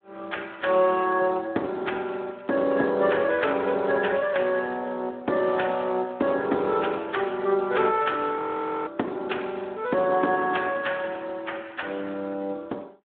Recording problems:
telephone audio; 220 Hz to 3.7 kHz, Speex
audio freezing; at 8.5 s

